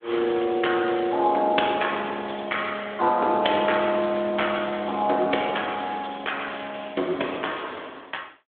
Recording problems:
telephone audio; 240 Hz to 3.5 kHz, Speex

